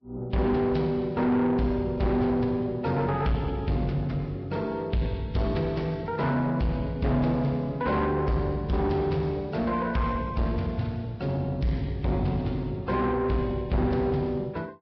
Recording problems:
lossy codec; Vorbis, log-spectral distance 2 dB, nothing above 5 kHz
distorted audio; soft clipping, signal-to-distortion ratio 11 dB

